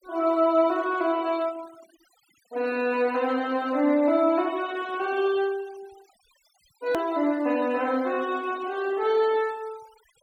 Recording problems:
noise reduction artefacts; signal-to-artefact ratio 23 dB
click at an edit; at 7 s

